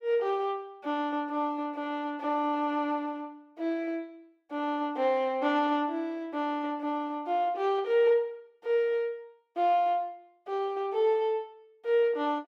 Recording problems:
none

